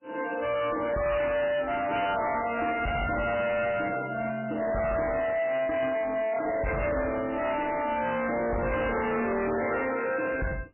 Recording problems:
lossy compression; MP3, log-spectral distance 5 dB, nothing above 2.6 kHz
distortion; hard clipping, signal-to-distortion ratio 6 dB

